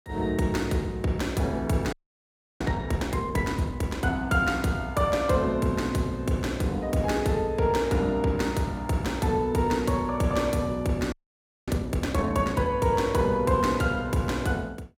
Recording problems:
audio freezing; at 2 s for 0.5 s and at 11 s for 0.5 s

